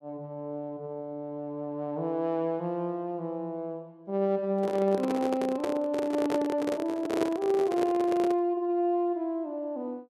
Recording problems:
microphone handling noise; from 4.5 to 8.5 s; peak +4 dB vs average level

